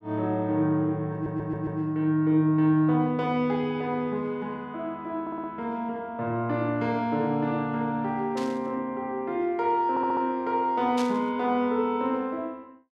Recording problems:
stutter; at 1 s, at 5 s and at 10 s
static burst; at 8.5 s and at 11 s; peak -6 dB vs average level

